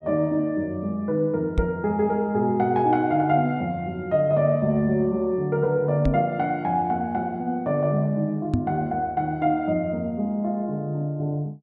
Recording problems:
microphone thump; at 1.5 s, at 6 s and at 8.5 s; peak +4 dB vs average level

